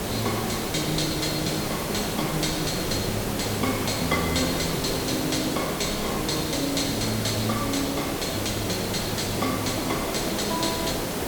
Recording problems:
background hiss; slope -5 dB per octave, SNR 1 dB
wind on the microphone; below 180 Hz, SNR 16 dB

